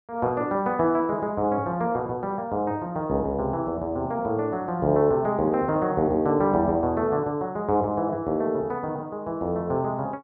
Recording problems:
none

